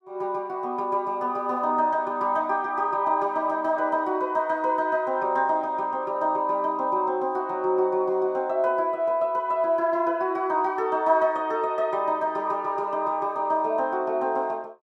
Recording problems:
none

